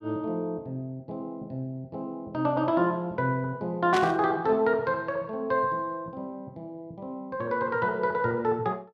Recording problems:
static burst; at 4 s; peak 0 dB vs average level

